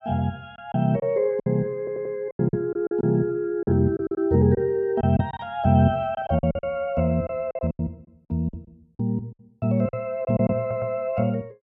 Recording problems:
packet loss; 10% of the sound replaced, filled with silence
audio stuttering; at 2 s and at 11 s

